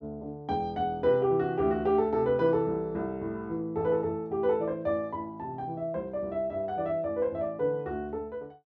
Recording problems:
none

